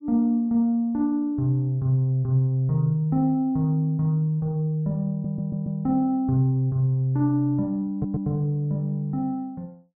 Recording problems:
audio stuttering; at 5 s and at 8 s

